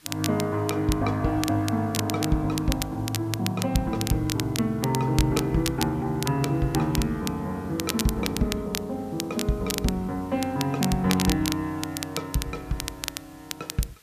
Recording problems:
background hiss; SNR 27 dB
crackle; vinyl, SNR 7 dB

